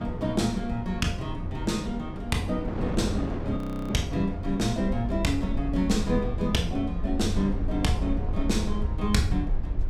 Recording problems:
rumble; below 64 Hz, SNR 7 dB
wind on the microphone; below 390 Hz, SNR 9 dB
frozen audio; at 3.5 s

